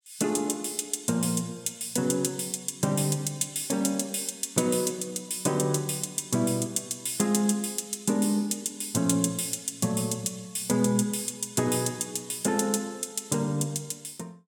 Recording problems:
none

